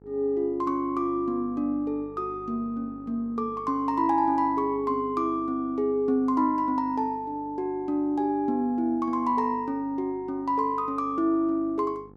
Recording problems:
mains hum; 50 Hz, harmonics up to 1.4 kHz, SNR 23 dB

